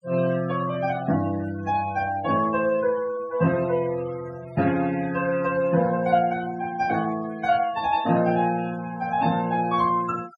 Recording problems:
noise reduction artefacts; signal-to-artefact ratio 16 dB

